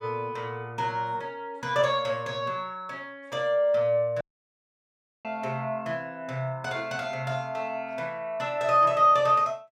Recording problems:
dropout; at 4 s for 1 s

